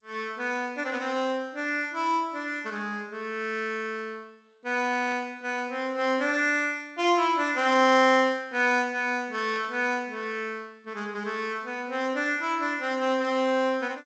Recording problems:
codec artefacts; G.722, log-spectral distance 2 dB, nothing above 7.6 kHz
static burst; at 1 s, at 5 s and at 9.5 s; peak -14 dB vs average level

